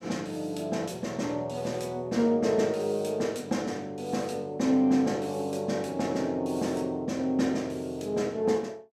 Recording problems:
none

